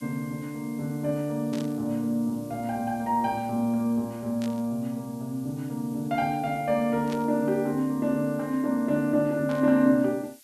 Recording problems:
hiss; slope +5 dB per octave, SNR 25 dB
burst of static; 4 times, first at 1.5 s; peak -10 dB vs average level

